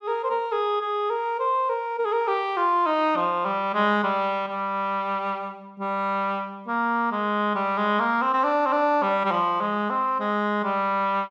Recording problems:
none

